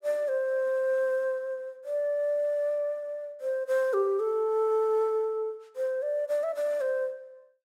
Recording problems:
none

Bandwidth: 16 kHz